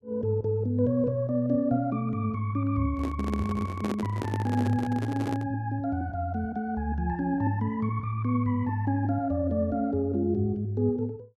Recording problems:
microphone handling noise; from 3 to 5.5 s; peak 0 dB vs average level

